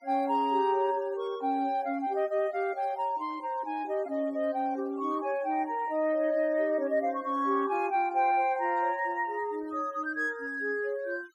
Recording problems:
denoising artefacts; signal-to-artefact ratio 28 dB

